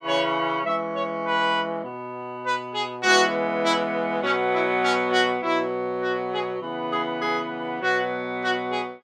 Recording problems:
none

